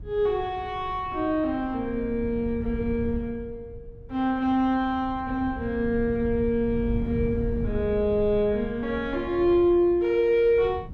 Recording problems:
wind on the microphone; below 120 Hz, SNR 12 dB

